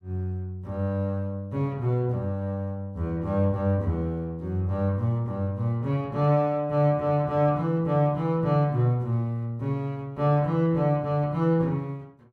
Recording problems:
none

